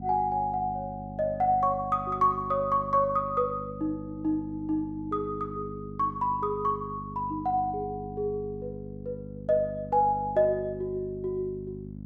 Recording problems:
hum; 50 Hz, harmonics up to 450 Hz, SNR 12 dB

